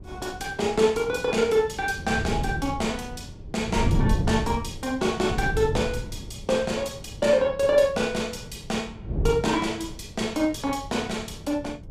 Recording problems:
wind noise; below 170 Hz, SNR 8 dB

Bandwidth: 15.5 kHz